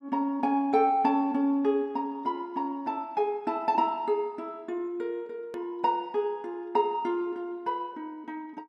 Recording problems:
hard cut with a click; at 5.5 s

